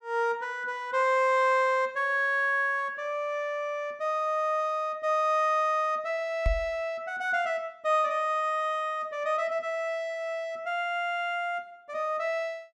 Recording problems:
knock on the microphone; at 6.5 s; peak +3 dB vs average level

